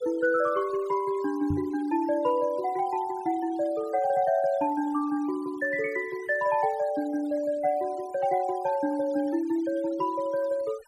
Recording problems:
denoising artefacts; signal-to-artefact ratio 21 dB
microphone thump; at 1.5 s; peak 0 dB vs average level

